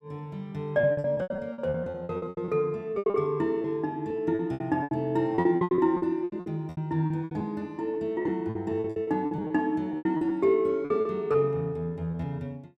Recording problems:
lost packets; 18% of the sound replaced, filled with repeated pitch periods

